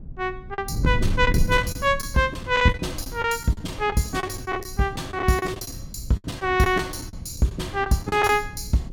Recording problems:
wind on the microphone; below 110 Hz, SNR 10 dB
packet loss; 12% of the sound replaced, filled with the last packet

